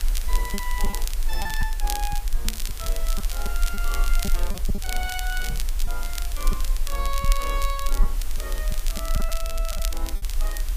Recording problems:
background hiss; slope -1 dB per octave, SNR 5 dB
rumble; below 40 Hz, strongest tone 18 Hz, SNR -5 dB
crackle; vinyl, SNR 1 dB
lost packets; 6% of the sound replaced, filled with repeated pitch periods
microphone bump; at 2.5 s and at 5.5 s; peak +3 dB vs average level

